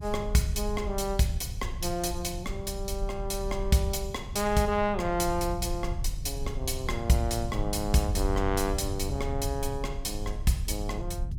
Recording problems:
low-frequency rumble; below 80 Hz, SNR 6 dB

